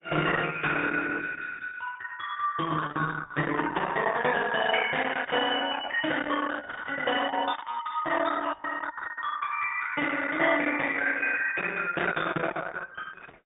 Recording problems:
treble missing; nothing above 3 kHz
codec artefacts; Opus, log-spectral distance 5 dB

